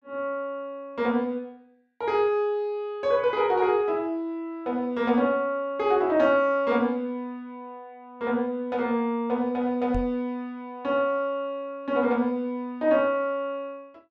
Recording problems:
knock on the microphone; at 10 s; peak -3 dB vs average level

